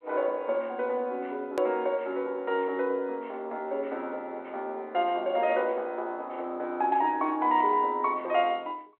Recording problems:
telephone audio; 280 Hz to 3.4 kHz, G.726
edit click; at 1.5 s

